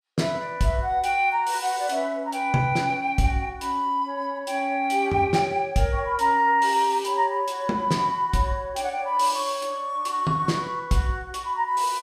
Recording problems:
none

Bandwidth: 15.5 kHz